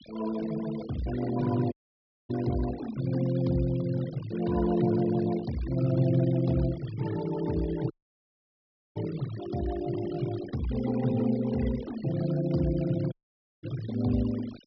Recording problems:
treble cut off; nothing above 5.5 kHz
denoising artefacts; signal-to-artefact ratio 18 dB
audio cutting out; at 1.5 s for 0.5 s, at 8 s for 1 s and at 13 s for 0.5 s

